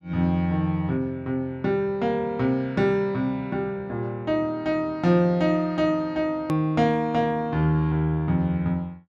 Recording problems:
hard cut with a click; at 6.5 s

